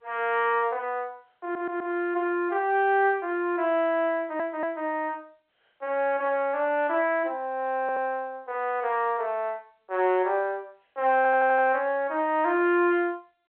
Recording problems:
phone line; 300 Hz to 3.5 kHz, G.711
audio stuttering; 4 times, first at 1.5 s

